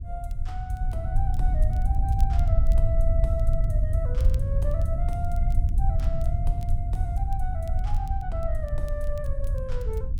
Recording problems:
rumble; below 72 Hz, SNR -10 dB
crackle; vinyl, SNR 21 dB

